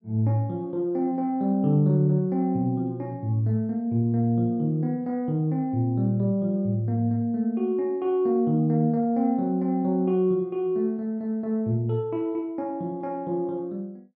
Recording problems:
none

